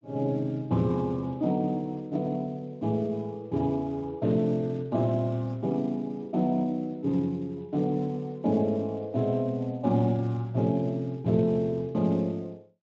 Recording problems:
lossy compression; Speex, log-spectral distance 2 dB

